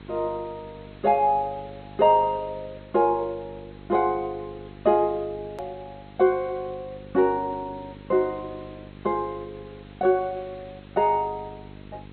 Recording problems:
low-pass filter; nothing above 4.2 kHz
lossy codec; MP3, log-spectral distance 6 dB
hum; 50 Hz, harmonics up to 850 Hz, SNR 20 dB
background hiss; SNR 28 dB
edit click; at 5.5 s

